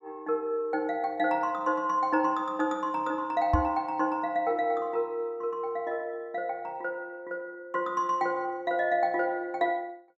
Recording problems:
microphone bump; at 3.5 s; peak +6 dB vs average level

